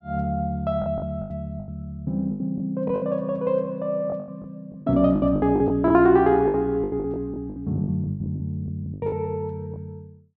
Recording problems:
lost packets; 15% of the sound replaced, filled with the last packet

